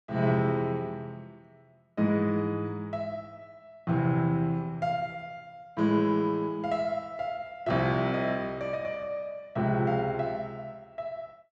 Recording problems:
none

